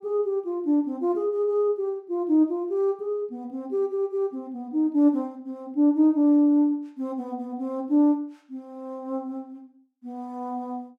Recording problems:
none

